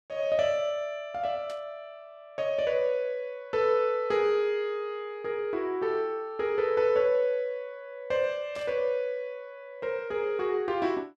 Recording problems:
burst of static; at 1.5 s and at 8.5 s; peak -14 dB vs average level

